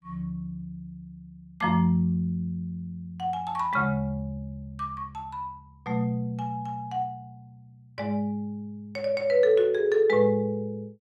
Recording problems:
none

